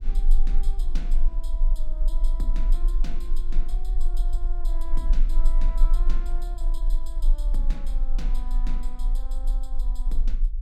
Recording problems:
low-frequency rumble; below 32 Hz, strongest tone 20 Hz, SNR -15 dB
wind on the microphone; below 160 Hz, SNR 16 dB

